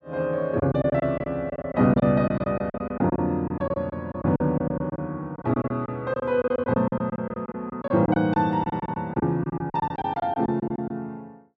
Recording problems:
packet loss; 16% of the sound replaced, filled with silence

